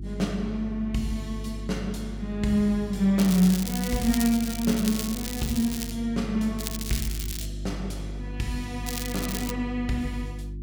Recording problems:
hum; 50 Hz, harmonics up to 350 Hz, SNR 10 dB
crackling; from 3 to 6 s, at 6.5 s and at 9 s; loose cable, SNR 7 dB

